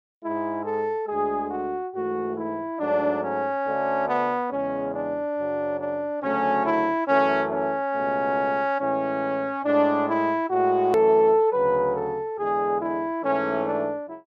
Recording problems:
hard cut with a click; at 11 s

